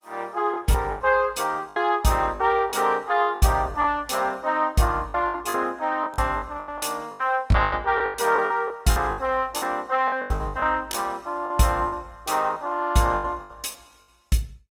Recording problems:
lossy codec; Opus, log-spectral distance 3 dB, nothing above 17 kHz
lost packets; 13% of the sound replaced, filled with the last packet

